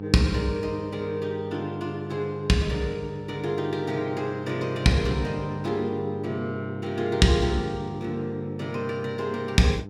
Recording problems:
hum; 50 Hz, harmonics up to 900 Hz, SNR 10 dB

